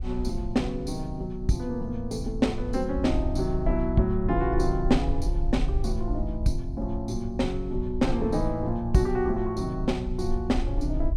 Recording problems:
wind noise; below 58 Hz, SNR 6 dB

